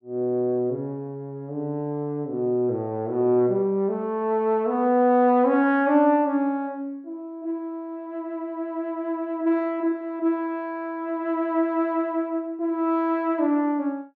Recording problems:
none

